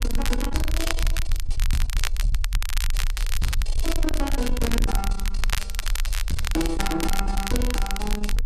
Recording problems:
distorted audio; soft clipping, signal-to-distortion ratio 10 dB
low-frequency rumble; below 44 Hz, SNR 0 dB
crackling; vinyl, SNR 4 dB

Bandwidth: 14 kHz